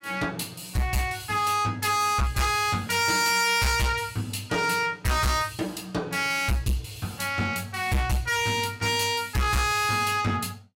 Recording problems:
distortion; hard clipping, signal-to-distortion ratio 7 dB

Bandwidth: 16 kHz